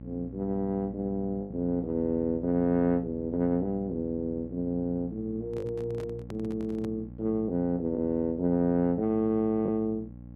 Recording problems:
electrical hum; 60 Hz, harmonics up to 600 Hz, SNR 15 dB
lost packets; 1.6% of the sound replaced, filled with the last packet
microphone handling noise; from 5.5 to 7 s; peak -8 dB vs average level

